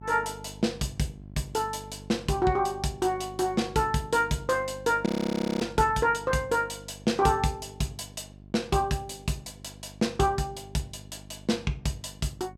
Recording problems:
hum; 50 Hz, harmonics up to 700 Hz, SNR 18 dB
audio freezing; at 5 s for 0.5 s

